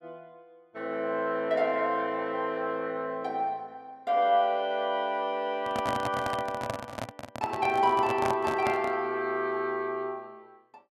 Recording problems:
microphone handling noise; from 5.5 to 9 s; peak 0 dB vs average level

